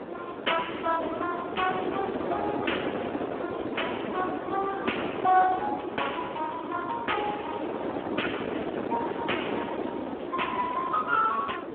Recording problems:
telephone audio; 260 Hz to 3.3 kHz, Speex
wind on the microphone; below 740 Hz, SNR 3 dB

